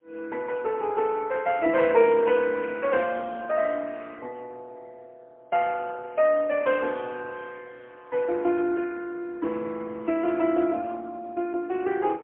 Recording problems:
phone line; 240 Hz to 3.2 kHz, AMR-NB, then MP3

